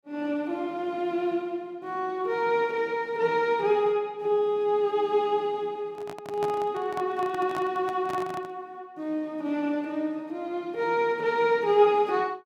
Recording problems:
microphone handling noise; from 6 to 8.5 s; peak -5 dB vs average level

